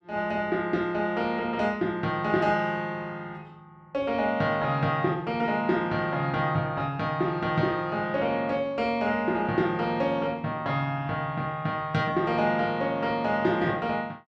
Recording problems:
none

